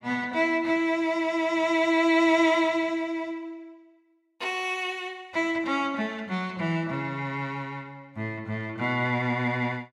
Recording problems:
none

